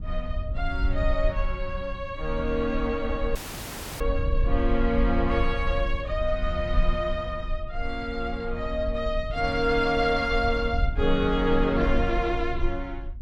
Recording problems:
rumble; below 60 Hz, SNR 4 dB
audio cutting out; at 3.5 s for 0.5 s

